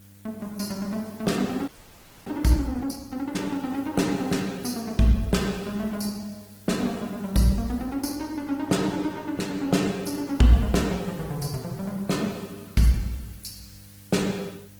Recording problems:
codec artefacts; Opus, log-spectral distance 5 dB, nothing above 19 kHz
electrical hum; 50 Hz, harmonics up to 800 Hz, SNR 24 dB
hiss; SNR 26 dB
frozen audio; at 1.5 s for 0.5 s

